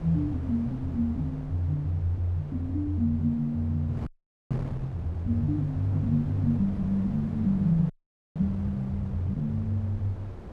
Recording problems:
wind on the microphone; below 300 Hz, SNR 13 dB
frozen audio; at 4 s and at 8 s

